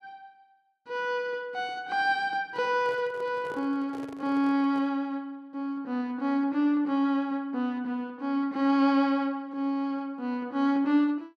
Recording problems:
microphone handling noise; from 2.5 to 5 s; peak -12 dB vs average level

